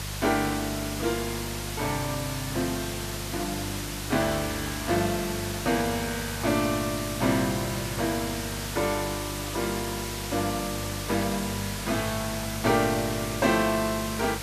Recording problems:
electrical hum; 50 Hz, harmonics up to 400 Hz, SNR 10 dB
background hiss; slope -1 dB per octave, SNR 5 dB

